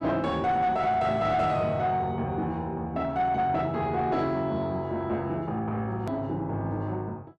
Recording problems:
distorted audio; soft clipping, signal-to-distortion ratio 10 dB
edit click; at 6 s

